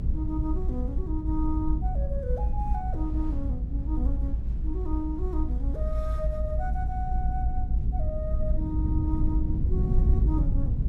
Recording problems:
rumble; below 70 Hz, SNR -7 dB
wind on the microphone; below 660 Hz, SNR 22 dB

